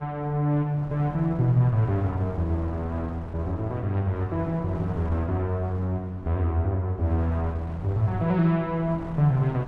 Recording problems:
wind on the microphone; below 540 Hz, SNR 15 dB

